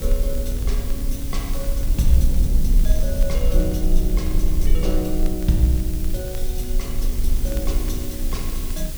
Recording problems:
hiss; slope +2 dB per octave, SNR 9 dB
rumble; below 46 Hz, strongest tone 20 Hz, SNR -2 dB
crackle; vinyl, SNR 22 dB

